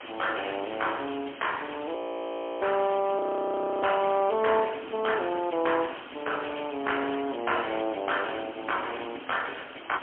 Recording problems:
phone line; 240 Hz to 3.3 kHz, AMR-NB, then MP3
background hiss; SNR 14 dB
wind on the microphone; below 440 Hz, SNR 19 dB
audio freezing; at 2 s for 0.5 s and at 3 s for 0.5 s

